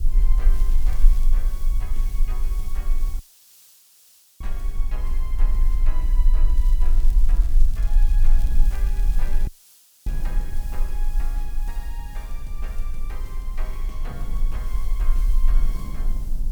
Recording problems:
hiss; SNR 6 dB
rumble; below 34 Hz, strongest tone 20 Hz, SNR -18 dB
wind noise; below 220 Hz, SNR 2 dB
crackling; at 0.5 s and from 6.5 to 10 s; loose cable, SNR 8 dB
audio cutting out; at 3 s for 1 s and at 9.5 s for 0.5 s

